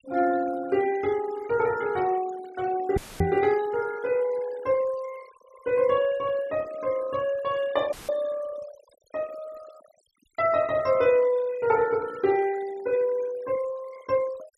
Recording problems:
noise reduction artefacts; signal-to-artefact ratio 20 dB
microphone thump; at 3 s; peak +4 dB vs average level
audio cutting out; at 3 s and at 8 s; filled with static

